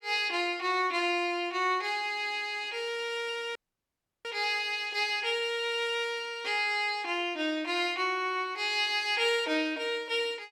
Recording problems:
audio cutting out; at 3.5 s for 0.5 s

